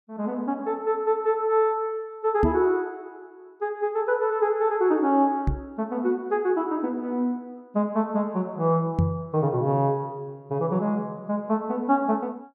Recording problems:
knock on the microphone; at 2.5 s, at 5.5 s and at 9 s; peak +6 dB vs average level

